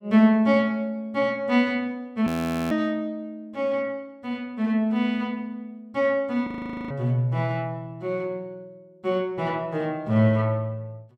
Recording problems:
frozen audio; at 2.5 s and at 6.5 s

